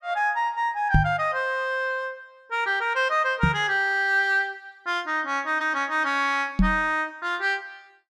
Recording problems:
microphone bump; at 1 s, at 3.5 s and at 6.5 s; peak +7 dB vs average level

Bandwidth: 14.5 kHz